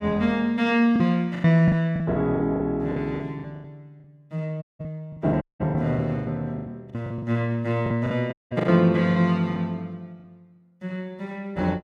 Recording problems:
packet loss; 13% of the sound replaced, filled with the last packet
audio cutting out; at 4.5 s, at 5.5 s and at 8.5 s

